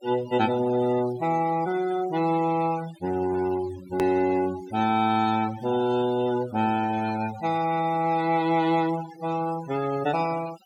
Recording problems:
noise reduction artefacts; signal-to-artefact ratio 16 dB
click at an edit; at 4 s

